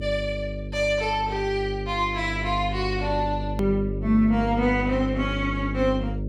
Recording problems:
hum; 50 Hz, harmonics up to 600 Hz, SNR 6 dB
edit click; at 3.5 s

